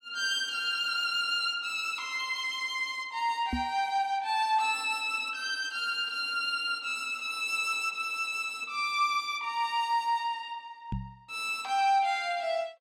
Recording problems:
microphone thump; at 3.5 s and at 11 s; peak 0 dB vs average level

